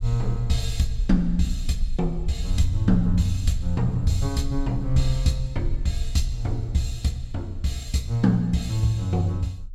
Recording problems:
rumble; below 44 Hz, strongest tone 20 Hz, SNR 9 dB

